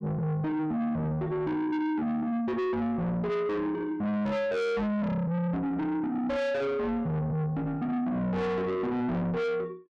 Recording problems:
distorted audio; soft clipping, signal-to-distortion ratio 7 dB

